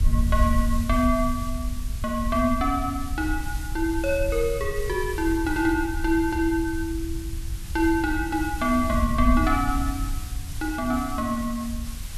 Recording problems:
hiss; slope +1 dB per octave, SNR 16 dB
wind on the microphone; below 76 Hz, SNR 5 dB

